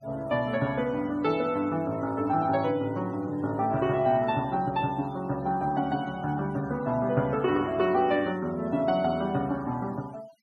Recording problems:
noise reduction artefacts; signal-to-artefact ratio 24 dB

